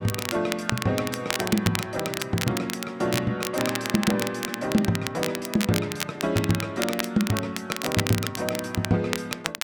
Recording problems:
crackle; vinyl, SNR 5 dB

